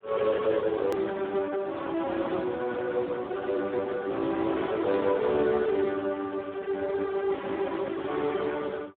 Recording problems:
telephone audio; 220 Hz to 3.8 kHz, Speex
edit click; at 1 s

